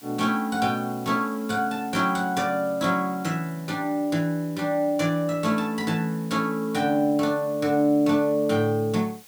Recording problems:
hiss; slope 0 dB per octave, SNR 23 dB

